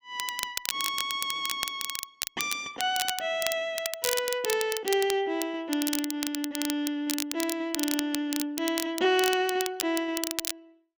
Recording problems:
crackling; vinyl, SNR 4 dB

